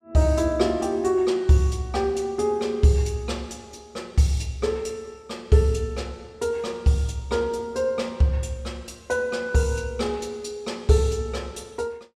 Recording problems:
none

